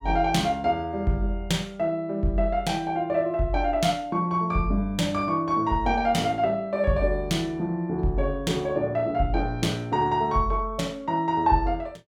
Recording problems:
none

